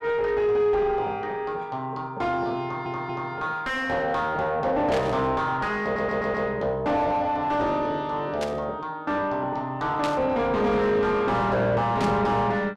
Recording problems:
distortion; soft clipping, signal-to-distortion ratio 6 dB
stutter; at 2.5 s and at 6 s
static burst; 4 times, first at 5 s; peak -4 dB vs average level

